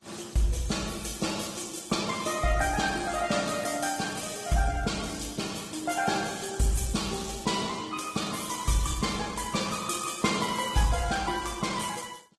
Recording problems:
codec artefacts; Vorbis, then Opus, log-spectral distance 7 dB, nothing above 12 kHz

